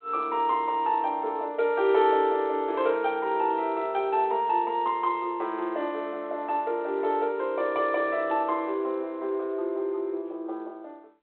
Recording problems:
telephone audio; 300 Hz to 3.6 kHz, G.726

